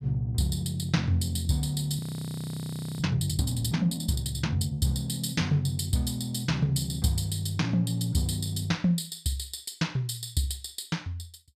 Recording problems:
frozen audio; at 2 s for 1 s

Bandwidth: 15 kHz